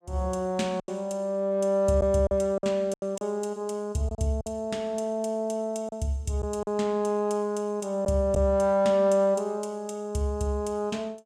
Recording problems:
lost packets; 4% of the sound replaced, filled with silence

